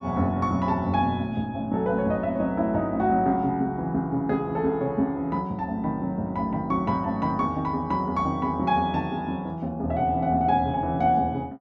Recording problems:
none

